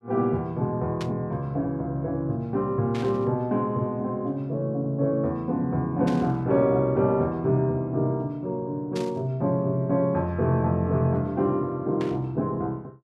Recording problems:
burst of static; 5 times, first at 1 s; peak -8 dB vs average level

